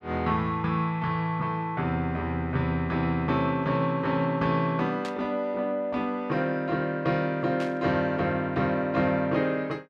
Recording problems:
static burst; at 5 s and at 7.5 s; peak -7 dB vs average level

